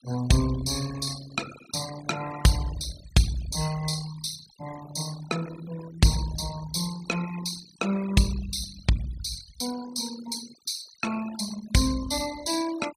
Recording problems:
noise reduction artefacts; signal-to-artefact ratio 13 dB

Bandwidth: 15.5 kHz